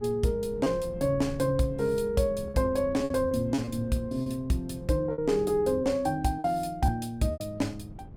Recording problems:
wind noise; below 200 Hz, SNR 16 dB
packet loss; 6% of the sound replaced, filled with repeated pitch periods

